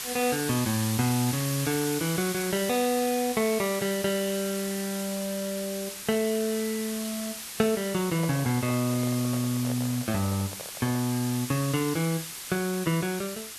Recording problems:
hiss; slope +2 dB per octave, SNR 6 dB
handling noise; from 8 to 11 s; peak -6 dB vs average level

